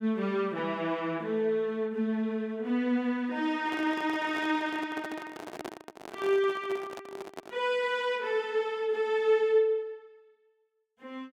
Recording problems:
microphone handling noise; from 3.5 to 7.5 s; peak -5 dB vs average level

